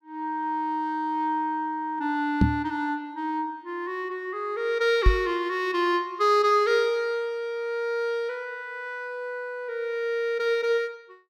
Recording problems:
microphone bump; at 2.5 s and at 5 s; peak +10 dB vs average level

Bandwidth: 16 kHz